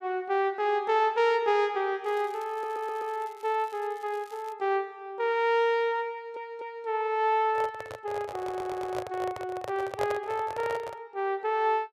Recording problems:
crackle; from 2 to 4.5 s; loose cable, SNR 27 dB
stutter; at 2.5 s, at 6 s and at 8.5 s
handling noise; from 7.5 to 11 s; peak -1 dB vs average level

